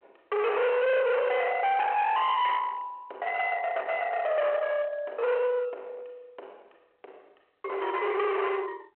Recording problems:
phone line; 520 Hz to 3.6 kHz, G.726
distortion; hard clipping, uneven, signal-to-distortion ratio 5 dB

